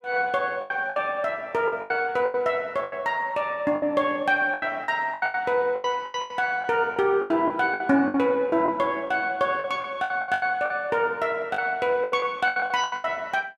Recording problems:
packet loss; 15% of the sound replaced, filled with the last packet

